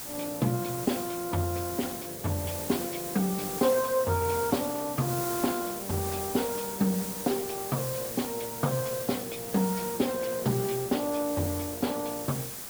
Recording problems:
codec artefacts; MP2, then Speex, log-spectral distance 5 dB
hiss; slope -2 dB per octave, SNR 6 dB
crackling; from 9 to 11 s; loose cable, SNR 27 dB

